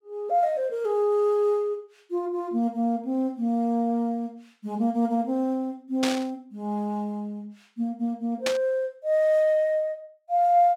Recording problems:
static burst; at 6 s and at 8.5 s; peak +2 dB vs average level

